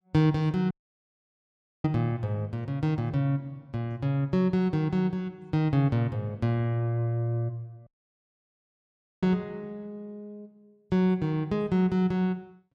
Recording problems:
dropout; at 0.5 s for 1 s and at 8 s for 1.5 s

